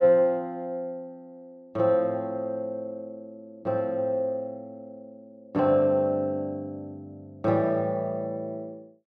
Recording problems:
none

